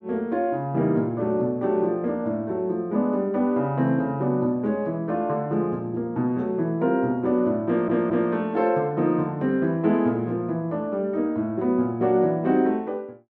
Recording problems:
stutter; at 7.5 s

